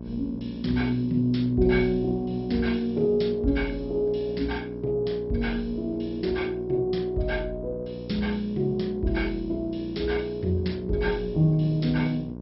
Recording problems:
lossy compression; MP2, log-spectral distance 2 dB, nothing above 5.5 kHz
electrical hum; 60 Hz, harmonics up to 1.1 kHz, SNR 11 dB

